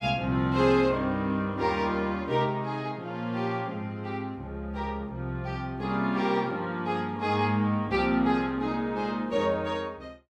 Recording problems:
none

